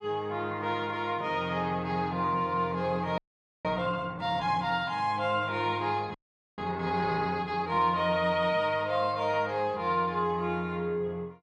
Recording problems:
frozen audio; at 3 s and at 6 s

